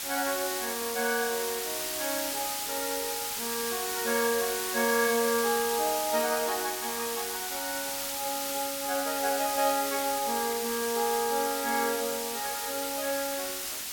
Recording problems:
hiss; slope +2 dB per octave, SNR 1 dB

